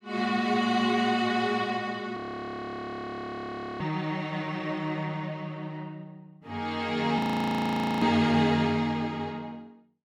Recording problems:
audio freezing; at 2 s for 1.5 s and at 7 s for 1 s

